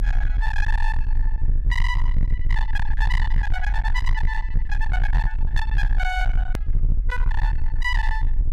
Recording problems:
distortion; hard clipping, uneven, signal-to-distortion ratio 7 dB
low-frequency rumble; below 44 Hz, strongest tone 24 Hz, SNR -4 dB
click at an edit; at 6.5 s

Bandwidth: 14.5 kHz